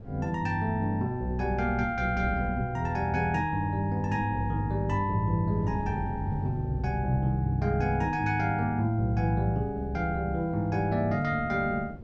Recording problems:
wind on the microphone; below 250 Hz, SNR 15 dB

